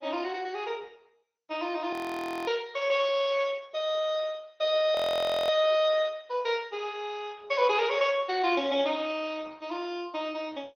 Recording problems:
lossy codec; MP2, then Opus, log-spectral distance 4 dB, nothing above 16.5 kHz
audio freezing; at 2 s for 0.5 s and at 5 s for 0.5 s

